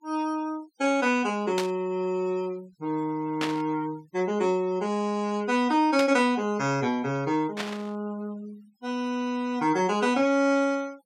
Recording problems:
denoising artefacts; signal-to-artefact ratio 24 dB
burst of static; 4 times, first at 1.5 s; peak 0 dB vs average level

